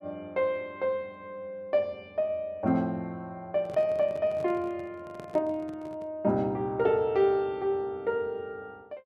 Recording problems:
handling noise; from 3.5 to 6 s; peak -9 dB vs average level

